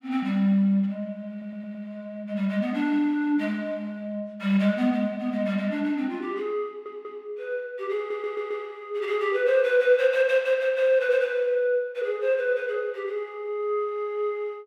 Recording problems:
audio stuttering; at 1.5 s, at 6.5 s and at 8 s

